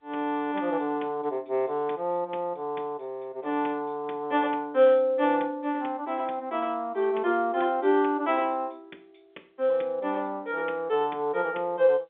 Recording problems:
telephone audio; 260 Hz to 3.6 kHz, G.711

